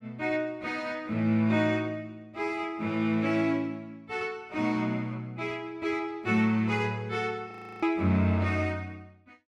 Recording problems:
audio freezing; at 7.5 s

